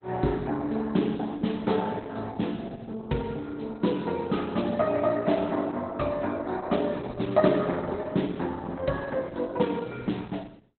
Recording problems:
lossy compression; Opus, log-spectral distance 5 dB, nothing above 4 kHz

